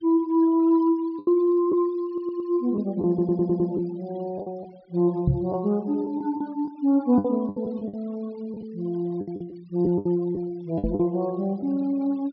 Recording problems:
low-pass filter; nothing above 5.5 kHz
noise reduction artefacts; signal-to-artefact ratio 27 dB
lost packets; 7% of the sound replaced, filled with the last packet
stutter; at 2 s and at 3 s
microphone thump; at 5.5 s and at 11 s; peak +6 dB vs average level

